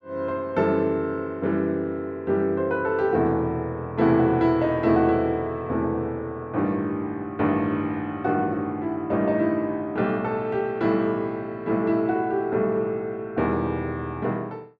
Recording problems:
none

